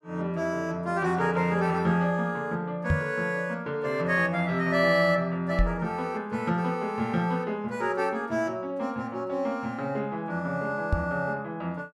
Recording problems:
microphone thump; at 3 s, at 5.5 s and at 11 s; peak +6 dB vs average level

